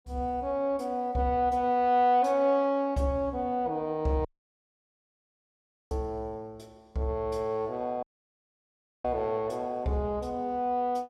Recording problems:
dropout; at 4.5 s for 1.5 s and at 8 s for 1 s

